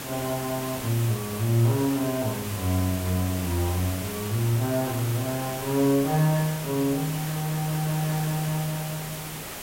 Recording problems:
hiss; slope -3 dB per octave, SNR 8 dB

